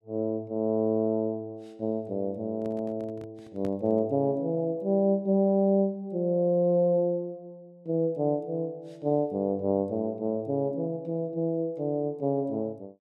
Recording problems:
microphone handling noise; from 2.5 to 4 s; peak -9 dB vs average level

